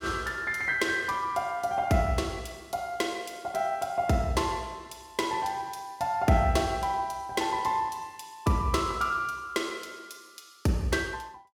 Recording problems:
none

